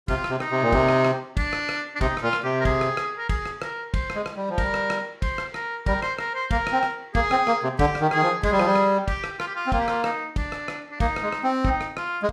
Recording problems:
none

